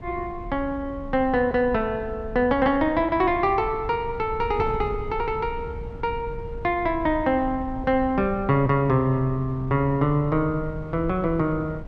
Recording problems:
wind on the microphone; below 120 Hz, SNR 14 dB

